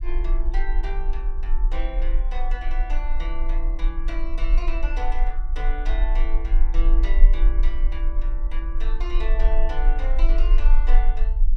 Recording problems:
rumble; below 36 Hz, strongest tone 22 Hz, SNR -11 dB

